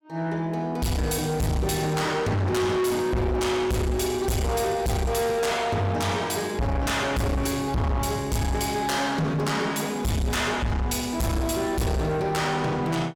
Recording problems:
distortion; soft clipping, signal-to-distortion ratio 6 dB

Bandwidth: 17 kHz